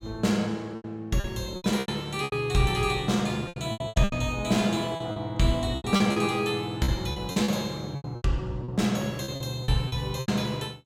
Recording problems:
packet loss; 14% of the sound replaced, filled with repeated pitch periods

